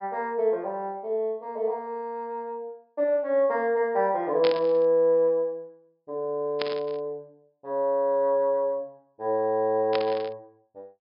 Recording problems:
treble missing; nothing above 5.5 kHz
burst of static; at 4.5 s, at 6.5 s and at 10 s; peak -1 dB vs average level

